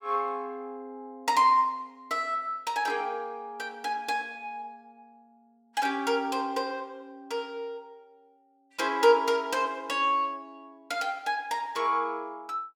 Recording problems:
none

